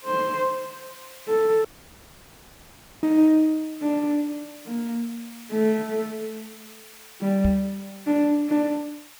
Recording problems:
hiss; SNR 20 dB
audio cutting out; at 1.5 s for 1.5 s
microphone thump; at 7.5 s; peak +1 dB vs average level

